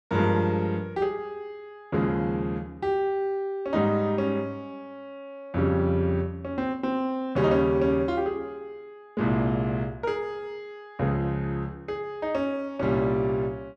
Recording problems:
none

